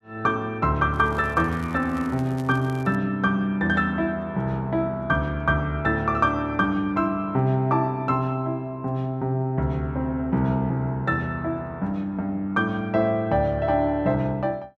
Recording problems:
crackling; from 1 to 3 s; loose cable, SNR 26 dB

